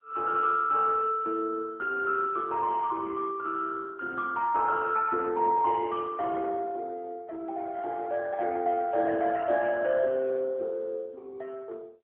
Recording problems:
phone line; 280 Hz to 2.9 kHz, AMR-NB

